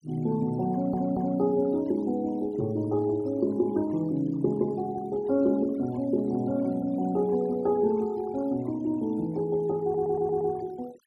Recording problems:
denoising artefacts; signal-to-artefact ratio 25 dB
stutter; at 0.5 s and at 10 s

